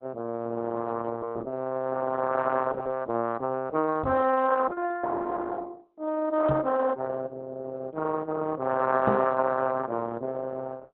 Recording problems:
lossy compression; Opus, log-spectral distance 3 dB
microphone thump; at 4 s, at 6.5 s and at 9 s; peak +3 dB vs average level

